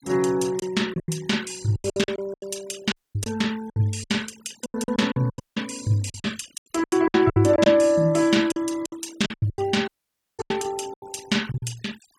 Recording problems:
noise reduction artefacts; signal-to-artefact ratio 20 dB
packet loss; 17% of the sound replaced, filled with silence
audio cutting out; at 3 s, at 5.5 s and at 10 s for 0.5 s

